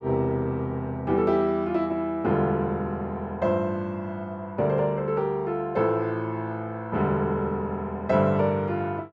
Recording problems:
none

